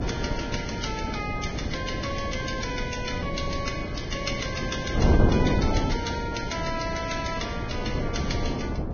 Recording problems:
codec artefacts; Vorbis, log-spectral distance 5 dB, nothing above 6.5 kHz
wind noise; below 340 Hz, SNR -2 dB
crackle; at 0.5 s; loose cable, SNR 26 dB

